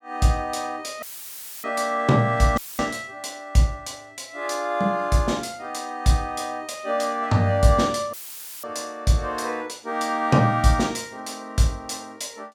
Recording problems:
audio cutting out; at 1 s for 0.5 s, at 2.5 s and at 8 s for 0.5 s; filled with static

